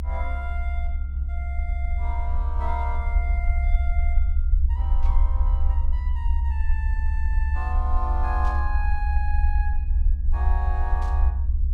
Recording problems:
hum; 50 Hz, harmonics up to 600 Hz, SNR 15 dB
rumble; below 68 Hz, SNR -10 dB
static burst; at 5 s, at 8.5 s and at 11 s; peak -9 dB vs average level

